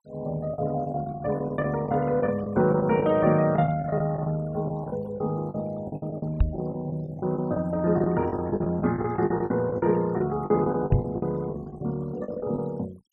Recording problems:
denoising artefacts; signal-to-artefact ratio 22 dB
packet loss; 13% of the sound replaced, filled with the last packet
knock on the microphone; at 6.5 s and at 11 s; peak +8 dB vs average level

